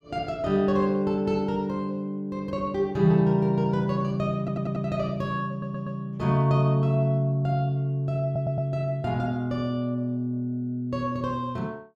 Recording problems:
stutter; at 4.5 s, at 5.5 s and at 8.5 s

